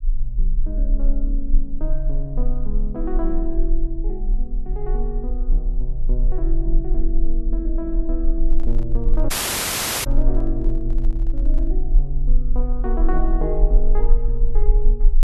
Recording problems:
rumble; below 34 Hz, strongest tone 18 Hz, SNR -6 dB
microphone handling noise; from 8.5 to 12 s; peak -11 dB vs average level
audio cutting out; at 9.5 s for 1 s

